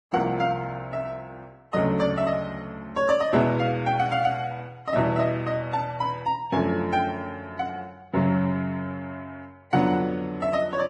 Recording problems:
lossy codec; Vorbis, log-spectral distance 2 dB

